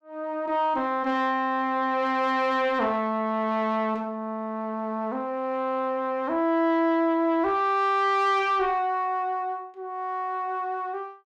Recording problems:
distortion; soft clipping, signal-to-distortion ratio 11 dB

